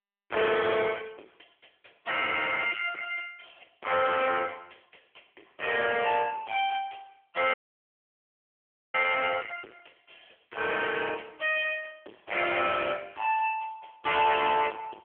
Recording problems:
phone line; 320 Hz to 3.3 kHz, AMR-NB
distortion; soft clipping, signal-to-distortion ratio 10 dB
audio cutting out; at 7.5 s for 1.5 s

